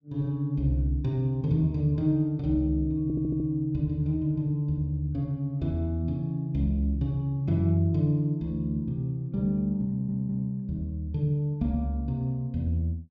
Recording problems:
stutter; at 3 s and at 10 s

